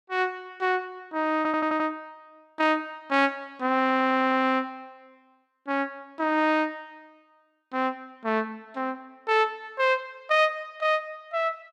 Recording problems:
audio stuttering; at 1.5 s and at 4 s

